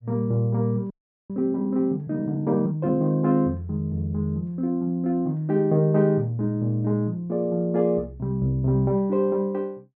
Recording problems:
treble missing; nothing above 8 kHz
audio freezing; at 1 s

